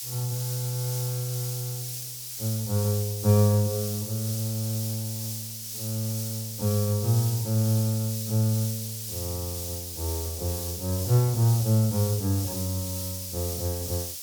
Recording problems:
background hiss; SNR 5 dB

